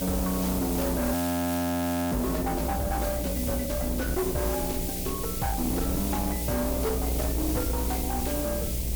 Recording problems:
distortion; hard clipping, uneven, signal-to-distortion ratio 7 dB
electrical hum; 60 Hz, harmonics up to 1.6 kHz, SNR 8 dB
hiss; SNR 5 dB
rumble; below 98 Hz, strongest tone 60 Hz, SNR 5 dB
audio freezing; at 1 s for 1 s

